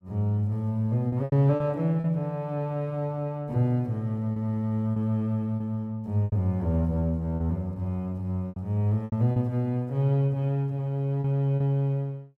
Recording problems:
lost packets; 6% of the sound replaced, filled with repeated pitch periods

